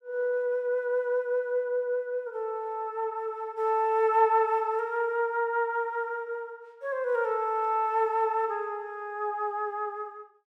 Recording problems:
none

